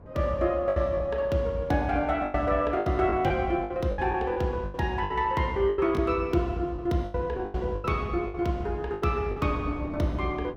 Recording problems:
wind on the microphone; below 460 Hz, SNR 18 dB
lost packets; 11% of the sound replaced, filled with the last packet

